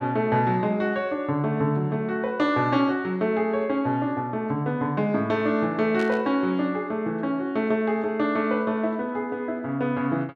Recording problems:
burst of static; at 6 s; peak -9 dB vs average level

